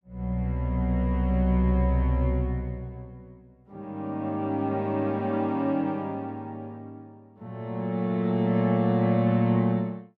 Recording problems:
none

